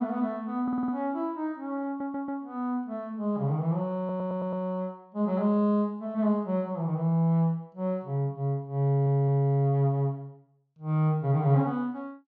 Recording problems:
stutter; 4 times, first at 0.5 s

